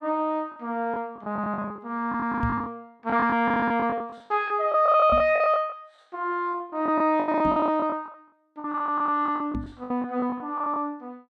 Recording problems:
lost packets; 17% of the sound replaced, filled with the last packet
knock on the microphone; 4 times, first at 2.5 s; peak 0 dB vs average level

